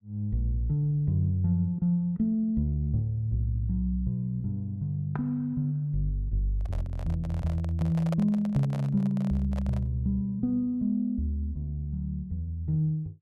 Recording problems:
microphone handling noise; from 6.5 to 10 s; peak -3 dB vs average level

